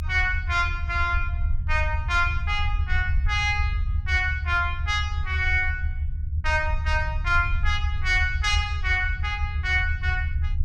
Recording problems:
rumble; below 78 Hz, SNR 3 dB

